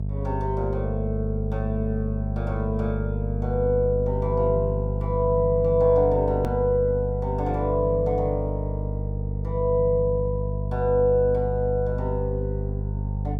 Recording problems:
hum; 50 Hz, harmonics up to 450 Hz, SNR 3 dB
click at an edit; at 6.5 s

